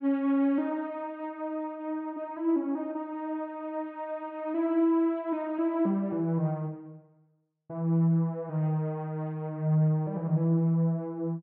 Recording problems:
none

